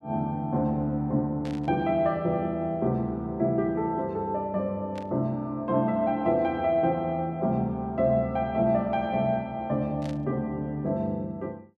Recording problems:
burst of static; at 1.5 s, at 5 s and at 10 s; peak -13 dB vs average level

